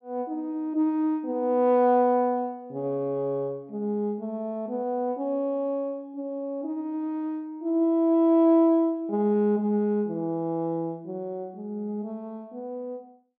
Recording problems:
none

